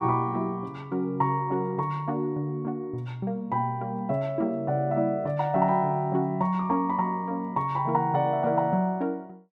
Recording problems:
none

